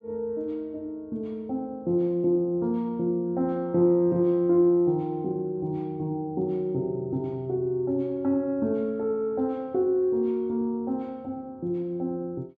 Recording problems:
none

